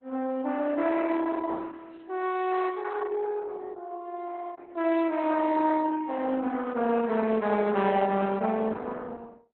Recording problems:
lossy compression; Opus, log-spectral distance 4 dB, nothing above 4 kHz

